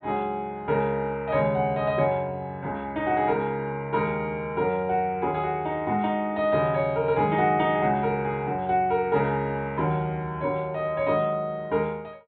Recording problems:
low-pass filter; nothing above 4 kHz

